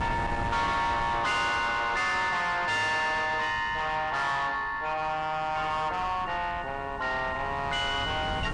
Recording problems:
lossy compression; MP3, log-spectral distance 2 dB, nothing above 9.2 kHz
distorted audio; soft clipping, signal-to-distortion ratio 7 dB
wind noise; below 890 Hz, SNR 13 dB

